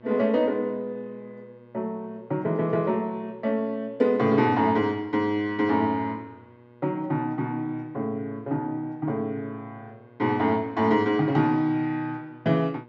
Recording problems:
hum; 60 Hz, harmonics up to 2.2 kHz, SNR 26 dB

